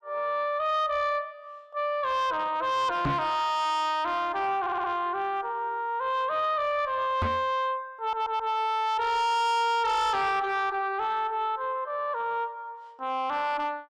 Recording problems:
distortion; soft clipping, signal-to-distortion ratio 7 dB
microphone thump; at 3 s and at 7 s; peak +3 dB vs average level
stutter; at 4.5 s and at 8 s

